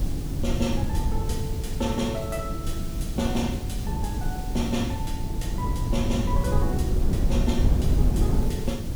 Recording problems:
hiss; SNR 13 dB
wind on the microphone; below 120 Hz, SNR -3 dB

